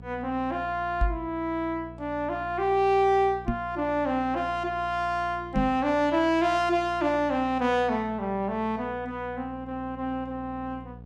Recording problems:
hum; 60 Hz, harmonics up to 960 Hz, SNR 18 dB
microphone thump; at 1 s, at 3.5 s and at 5.5 s; peak +4 dB vs average level

